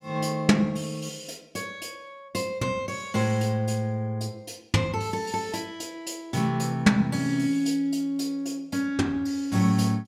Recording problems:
none

